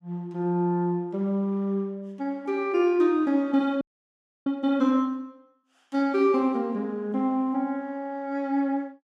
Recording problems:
frozen audio; at 4 s for 0.5 s

